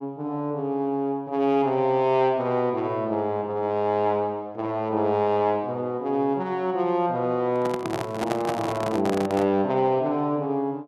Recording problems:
microphone handling noise; from 7.5 to 9.5 s; peak 0 dB vs average level

